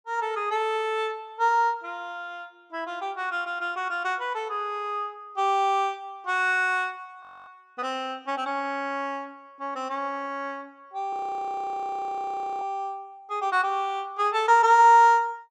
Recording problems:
audio freezing; at 7 s and at 11 s for 1.5 s

